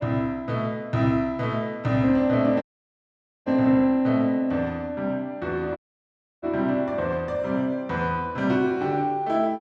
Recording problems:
dropout; at 2.5 s for 1 s and at 6 s for 0.5 s

